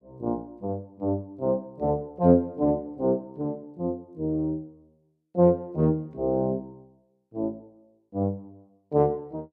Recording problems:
none

